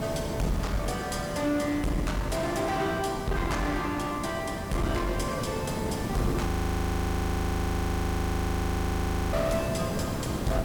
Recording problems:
distorted audio; hard clipping, uneven, signal-to-distortion ratio 6 dB
background hiss; slope -7 dB per octave, SNR 3 dB
audio freezing; at 6.5 s for 3 s

